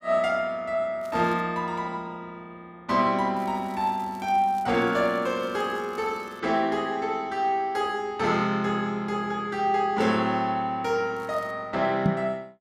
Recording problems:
crackle; at 1 s, from 3.5 to 6.5 s and at 11 s; loose cable, SNR 28 dB
knock on the microphone; at 12 s; peak +5 dB vs average level

